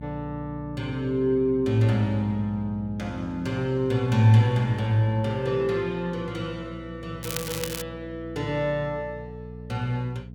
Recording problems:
mains hum; 60 Hz, harmonics up to 480 Hz, SNR 15 dB
crackling; at 7 s; loose cable, SNR 8 dB

